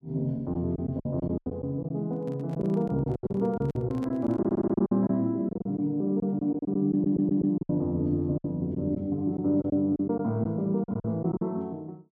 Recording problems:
lost packets; 11% of the sound replaced, filled with silence
microphone handling noise; from 2 to 5 s; peak -9 dB vs average level
stutter; at 4.5 s and at 7 s

